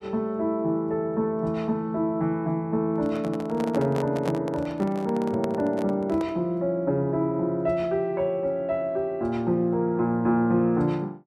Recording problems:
microphone handling noise; from 3 to 6.5 s; peak -3 dB vs average level

